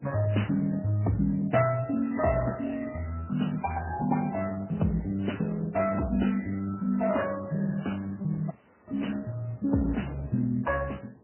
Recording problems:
lossy codec; Speex, then MP3, log-spectral distance 5 dB, nothing above 3 kHz
wind on the microphone; below 560 Hz, SNR 23 dB
audio cutting out; at 8.5 s

